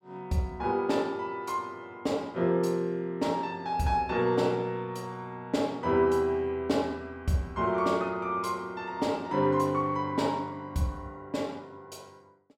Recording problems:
none

